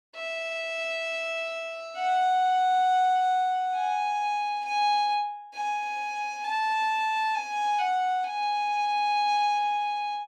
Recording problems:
none

